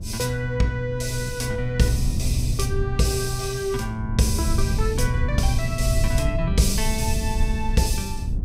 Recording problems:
hum; 60 Hz, harmonics up to 300 Hz, SNR 21 dB
rumble; below 94 Hz, SNR 3 dB

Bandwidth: 15.5 kHz